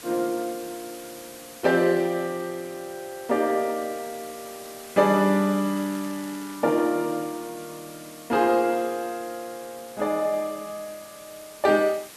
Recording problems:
hiss; slope -1 dB per octave, SNR 18 dB
crackling; at 5.5 s; loose cable, SNR 25 dB

